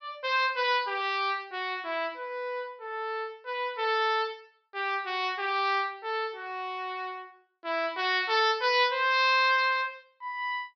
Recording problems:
low-pass filter; nothing above 5.5 kHz

